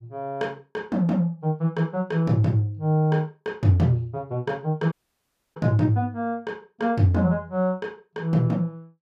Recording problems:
dropout; at 5 s for 0.5 s

